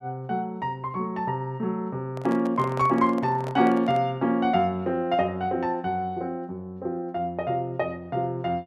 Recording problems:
handling noise; from 2 to 4 s; peak -7 dB vs average level

